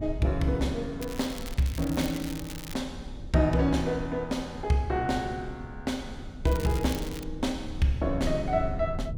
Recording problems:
hum; 50 Hz, harmonics up to 600 Hz, SNR 28 dB
rumble; below 98 Hz, SNR 12 dB
crackling; from 1 to 3 s and at 6.5 s; loose cable, SNR 14 dB

